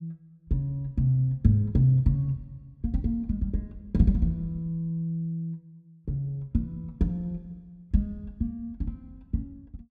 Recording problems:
none

